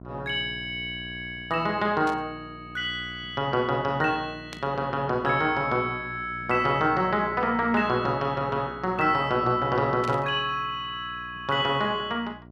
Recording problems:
hum; 60 Hz, harmonics up to 1.1 kHz, SNR 18 dB
burst of static; at 2 s, at 4.5 s and at 10 s; peak -8 dB vs average level

